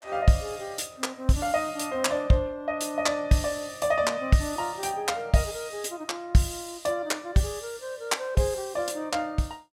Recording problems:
none

